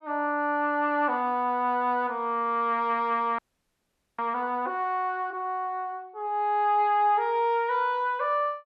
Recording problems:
audio freezing; at 3.5 s for 1 s

